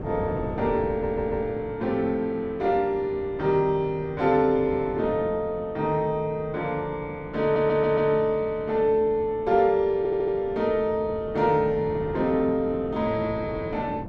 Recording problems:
wind noise; below 430 Hz, SNR 14 dB
stutter; at 1 s, at 7.5 s and at 10 s

